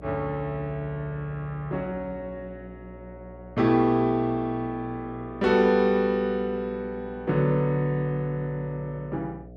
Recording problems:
electrical hum; 60 Hz, harmonics up to 720 Hz, SNR 18 dB

